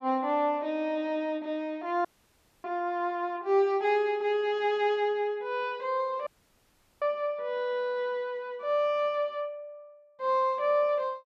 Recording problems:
audio cutting out; at 2 s for 0.5 s and at 6.5 s for 0.5 s

